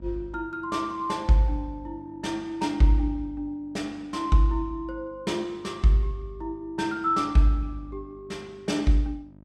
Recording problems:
electrical hum; 50 Hz, harmonics up to 950 Hz, SNR 25 dB

